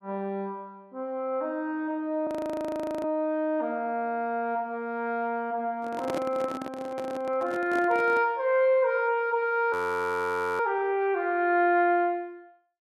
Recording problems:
frozen audio; at 2.5 s for 1 s and at 9.5 s for 1 s
handling noise; from 6 to 8.5 s; peak -1 dB vs average level

